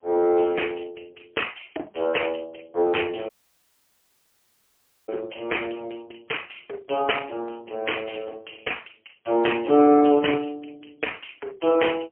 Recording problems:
telephone audio; 260 Hz to 3.1 kHz, AMR-NB, then MP3
audio cutting out; at 3.5 s for 2 s

